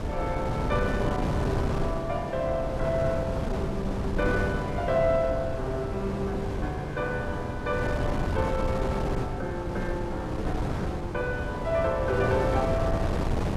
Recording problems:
wind noise; below 450 Hz, SNR 1 dB

